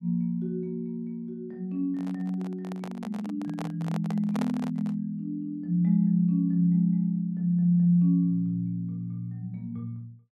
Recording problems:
microphone handling noise; from 2 to 5 s; peak -5 dB vs average level

